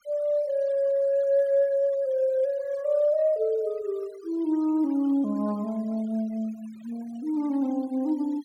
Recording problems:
noise reduction artefacts; signal-to-artefact ratio 27 dB

